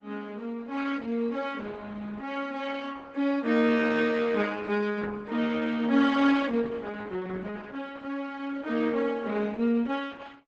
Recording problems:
codec artefacts; Opus, log-spectral distance 3 dB, nothing above 8 kHz

